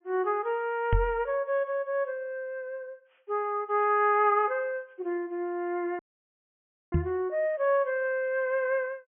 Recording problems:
low-pass filter; nothing above 3.3 kHz
microphone thump; at 1 s and at 7 s; peak +6 dB vs average level
audio cutting out; at 6 s for 1 s

